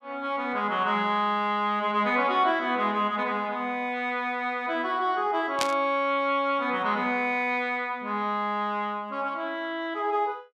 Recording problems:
static burst; at 5.5 s; peak +4 dB vs average level

